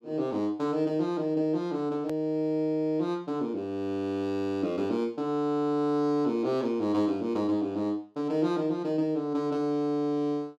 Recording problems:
click at an edit; at 2 s

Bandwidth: 14 kHz